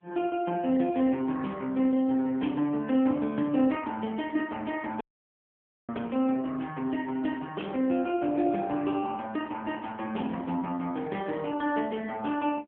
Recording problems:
telephone audio; 190 Hz to 3.3 kHz, AMR-NB
dropout; at 5 s for 1 s

